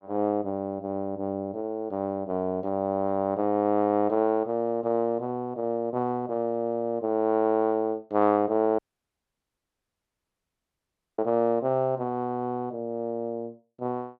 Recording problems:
audio cutting out; at 9 s for 2.5 s

